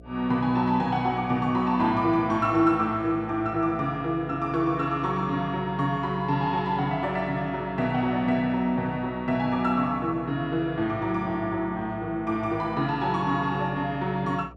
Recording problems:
hum; 60 Hz, harmonics up to 720 Hz, SNR 22 dB

